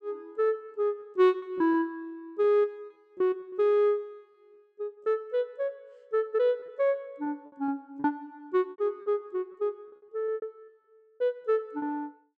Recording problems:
lost packets; 9% of the sound replaced, filled with repeated pitch periods

